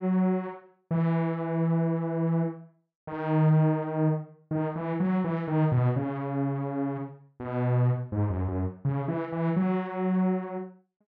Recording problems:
low-pass filter; nothing above 8 kHz

